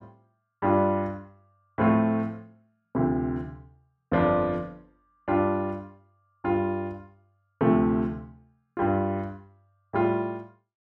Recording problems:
none

